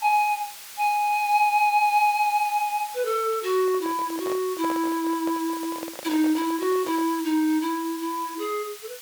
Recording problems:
hiss; slope +3 dB per octave, SNR 14 dB
handling noise; from 3.5 to 7 s; peak -7 dB vs average level

